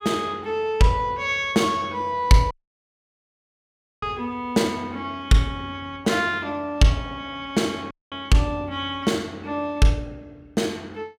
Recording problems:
dropout; at 2.5 s for 1.5 s and at 8 s

